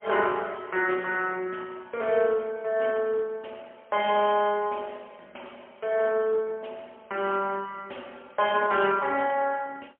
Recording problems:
telephone audio; 300 Hz to 3.3 kHz, AMR-NB, then MP3

